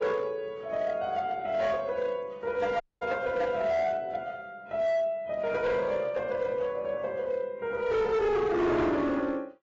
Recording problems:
lossy compression; AAC, then AAC, log-spectral distance 2 dB, nothing above 7.3 kHz
distortion; hard clipping, signal-to-distortion ratio 10 dB
dropout; at 3 s

